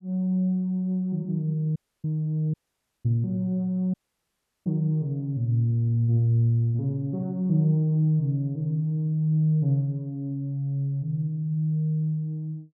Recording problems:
dropout; at 2 s, at 2.5 s for 0.5 s and at 4 s for 0.5 s

